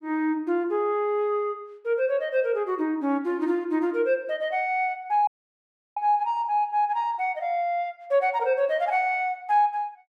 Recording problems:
audio cutting out; at 5.5 s for 0.5 s

